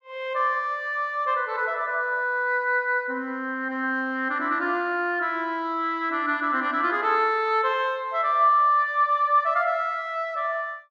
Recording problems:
none

